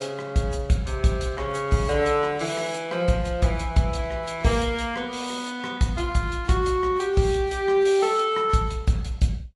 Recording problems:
codec artefacts; AAC, log-spectral distance 2 dB, nothing above 11 kHz

